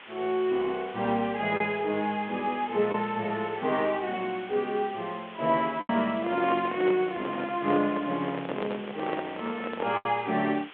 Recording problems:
phone line; 240 Hz to 3.5 kHz, G.726
hiss; SNR 17 dB
lost packets; 2% of the sound replaced, filled with the last packet
handling noise; from 6 to 10 s; peak -1 dB vs average level

